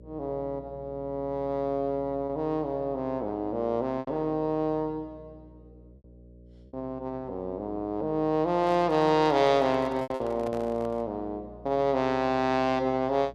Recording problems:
hum; 60 Hz, harmonics up to 600 Hz, SNR 22 dB
lost packets; 2% of the sound replaced, filled with repeated pitch periods
microphone handling noise; from 8.5 to 11 s; peak -10 dB vs average level

